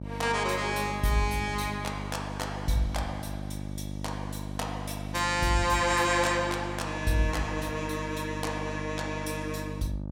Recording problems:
electrical hum; 50 Hz, harmonics up to 900 Hz, SNR 8 dB

